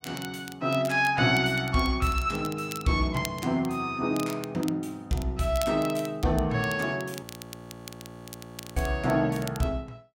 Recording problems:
crackling; vinyl, SNR 17 dB
audio freezing; at 7 s for 1.5 s

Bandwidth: 16.5 kHz